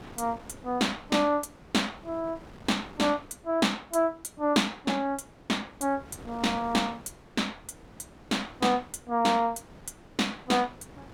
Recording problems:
wind on the microphone; below 860 Hz, SNR 21 dB

